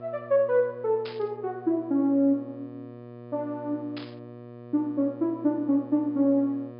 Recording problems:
treble missing; nothing above 5.5 kHz
electrical hum; 60 Hz, harmonics up to 1.8 kHz, SNR 18 dB
static burst; at 1 s and at 4 s; peak -10 dB vs average level

